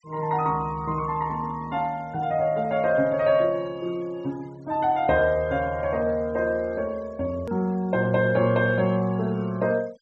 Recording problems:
low-pass filter; nothing above 8 kHz
noise reduction artefacts; signal-to-artefact ratio 28 dB
hard cut with a click; at 7.5 s

